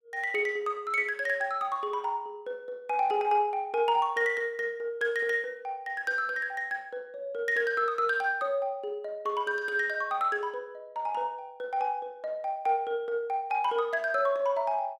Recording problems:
none

